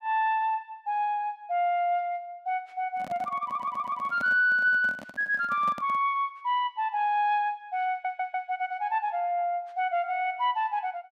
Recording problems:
microphone handling noise; from 3 to 6 s; peak -9 dB vs average level
audio stuttering; at 3.5 s and at 8 s

